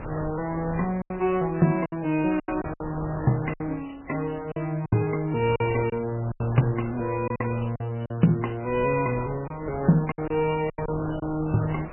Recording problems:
lossy compression; MP3, log-spectral distance 5 dB, nothing above 2.5 kHz
wind on the microphone; below 950 Hz, SNR 14 dB
packet loss; 8% of the sound replaced, filled with silence

